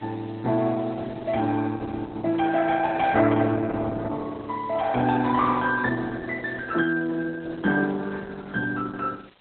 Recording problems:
lossy compression; Opus, log-spectral distance 5 dB, nothing above 3.6 kHz
background hiss; SNR 28 dB

